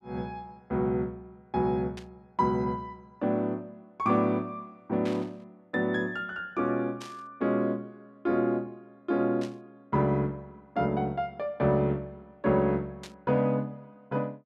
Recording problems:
static burst; 5 times, first at 2 s; peak -9 dB vs average level

